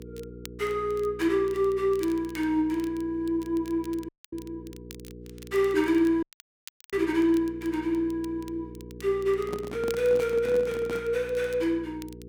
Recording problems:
hum; 60 Hz, harmonics up to 480 Hz, SNR 17 dB
crackling; vinyl, SNR 24 dB
audio cutting out; at 4 s and at 6 s for 0.5 s
microphone handling noise; from 9.5 to 11 s; peak -5 dB vs average level

